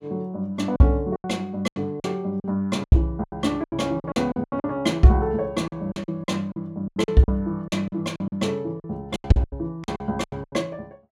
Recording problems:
lost packets; 16% of the sound replaced, filled with silence

